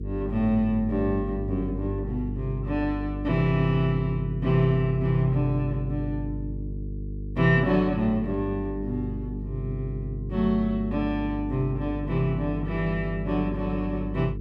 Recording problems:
hum; 50 Hz, harmonics up to 450 Hz, SNR 7 dB

